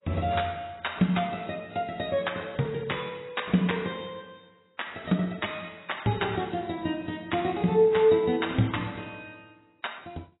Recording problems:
codec artefacts; AAC, log-spectral distance 7 dB, nothing above 3.8 kHz

